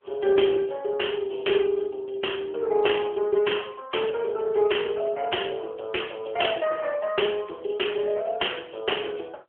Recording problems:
phone line; 320 Hz to 3.3 kHz, AMR-NB

